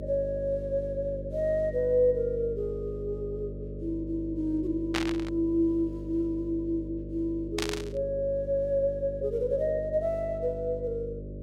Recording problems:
hum; 50 Hz, harmonics up to 600 Hz, SNR 10 dB
burst of static; at 5 s and at 7.5 s; peak +4 dB vs average level

